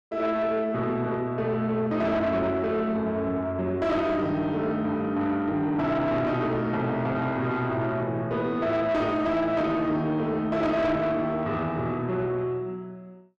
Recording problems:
distortion; soft clipping, signal-to-distortion ratio 10 dB

